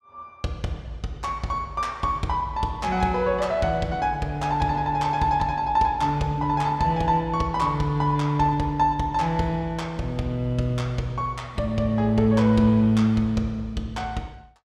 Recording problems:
none

